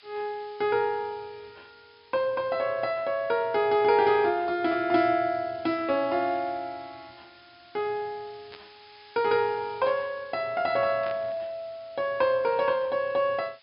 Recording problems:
treble cut off; nothing above 5.5 kHz
hiss; SNR 27 dB
static burst; at 8.5 s and at 11 s; peak -11 dB vs average level

